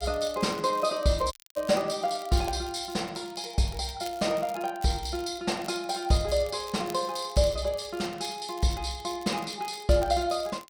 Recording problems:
crackling; vinyl, SNR 20 dB
audio cutting out; at 1.5 s

